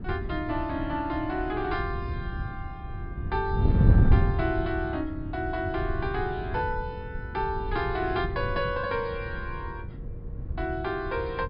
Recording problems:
treble missing; nothing above 5.2 kHz
wind noise; below 140 Hz, SNR 0 dB

